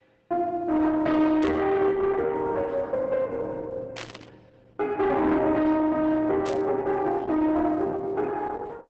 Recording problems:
lossy compression; Opus, log-spectral distance 3 dB
distorted audio; soft clipping, signal-to-distortion ratio 10 dB
static burst; at 1.5 s, at 4 s and at 6.5 s; peak -8 dB vs average level

